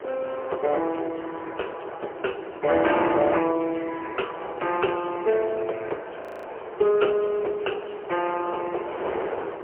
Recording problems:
phone line; 340 Hz to 2.7 kHz, AMR-NB, then MP3
wind on the microphone; below 890 Hz, SNR 10 dB
audio freezing; at 6 s

